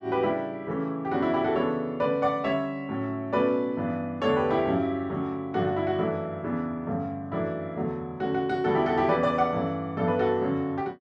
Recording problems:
none

